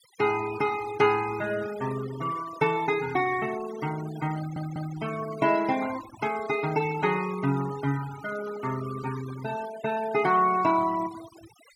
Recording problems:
denoising artefacts; signal-to-artefact ratio 15 dB
stutter; at 4.5 s

